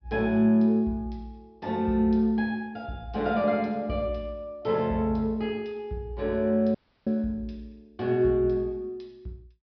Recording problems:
treble cut off; nothing above 5.5 kHz
dropout; at 7 s

